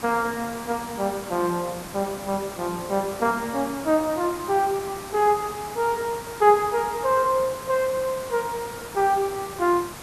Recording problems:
background hiss; slope -4 dB per octave, SNR 13 dB

